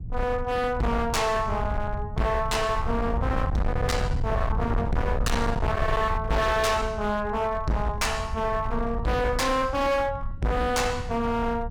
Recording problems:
distortion; hard clipping, signal-to-distortion ratio 7 dB
rumble; below 120 Hz, SNR 6 dB

